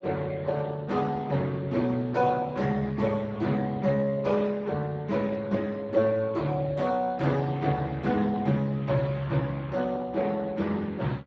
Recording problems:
lossy codec; Speex, log-spectral distance 3 dB

